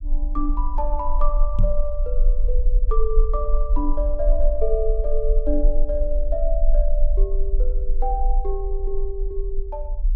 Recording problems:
low-frequency rumble; below 38 Hz, strongest tone 18 Hz, SNR -4 dB
knock on the microphone; at 1.5 s; peak +7 dB vs average level

